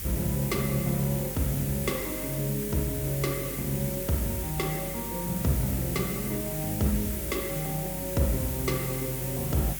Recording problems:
hum; 50 Hz, harmonics up to 450 Hz, SNR 14 dB
hiss; SNR 4 dB

